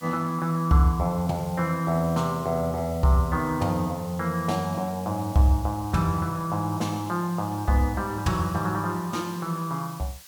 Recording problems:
background hiss; slope +2 dB per octave, SNR 20 dB

